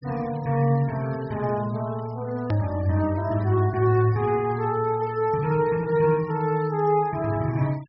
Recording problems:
treble cut off; nothing above 5.5 kHz
noise reduction artefacts; signal-to-artefact ratio 24 dB
click at an edit; at 2.5 s

